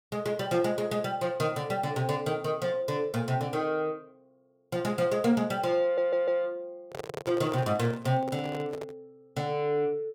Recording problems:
audio stuttering; at 6 s
microphone handling noise; from 7 to 9 s; peak -3 dB vs average level

